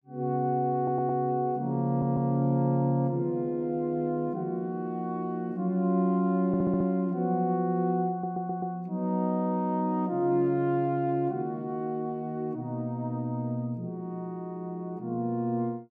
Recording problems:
stutter; 4 times, first at 1 s

